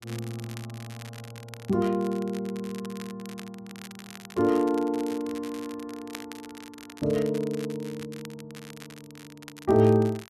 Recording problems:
crackle; vinyl, SNR 18 dB

